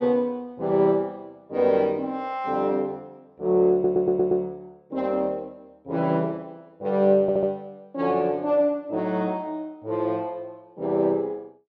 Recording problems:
audio stuttering; at 3.5 s and at 7 s

